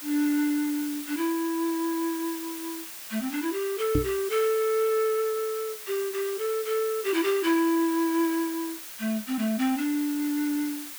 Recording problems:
hiss; slope +2 dB per octave, SNR 10 dB
knock on the microphone; at 4 s; peak +6 dB vs average level

